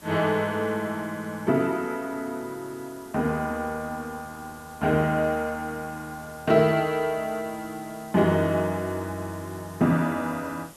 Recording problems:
hiss; SNR 22 dB

